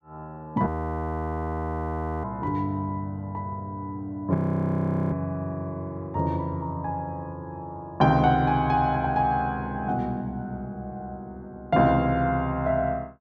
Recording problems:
audio freezing; at 0.5 s for 1.5 s and at 4.5 s for 1 s

